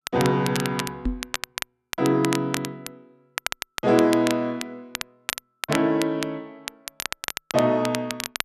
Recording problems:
crackling; vinyl, SNR 9 dB
microphone thump; at 1 s; peak +1 dB vs average level

